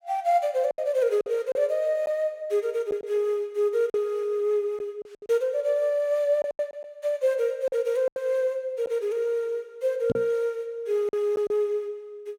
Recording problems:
lost packets; 6% of the sound replaced, filled with silence
knock on the microphone; at 10 s; peak 0 dB vs average level

